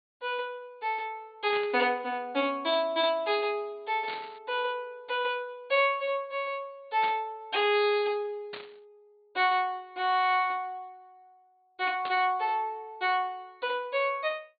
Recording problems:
treble cut off; nothing above 4.6 kHz
static burst; 5 times, first at 1.5 s; peak -6 dB vs average level

